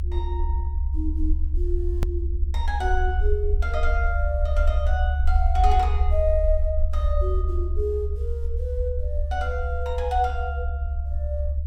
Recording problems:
low-frequency rumble; below 70 Hz, SNR -4 dB
edit click; at 2 s

